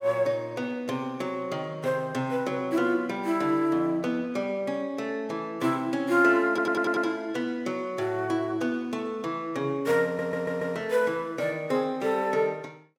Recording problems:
audio stuttering; at 6.5 s and at 10 s

